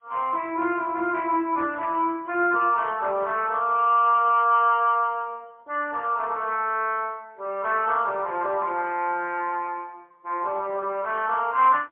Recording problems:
phone line; 280 Hz to 3.3 kHz, AMR-NB, then MP3

